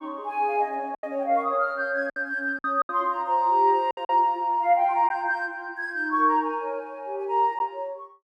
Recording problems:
lost packets; 5% of the sound replaced, filled with silence

